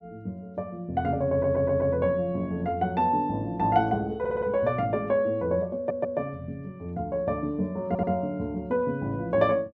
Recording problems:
audio stuttering; 4 times, first at 1.5 s

